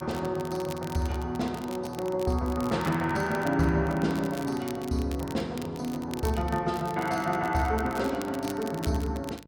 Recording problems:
hum; 50 Hz, harmonics up to 1.1 kHz, SNR 23 dB
crackle; vinyl, SNR 17 dB

